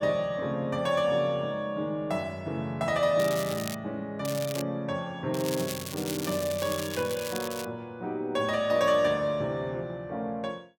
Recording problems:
crackling; at 3 s, at 4.5 s and from 5.5 to 7.5 s; loose cable, SNR 9 dB

